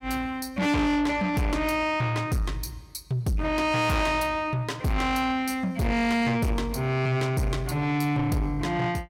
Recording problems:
distortion; soft clipping, signal-to-distortion ratio 7 dB

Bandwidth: 16.5 kHz